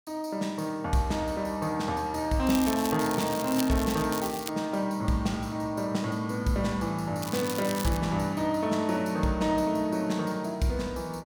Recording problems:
crackle; from 2.5 to 4 s, at 4 s and at 7 s; loose cable, SNR 9 dB

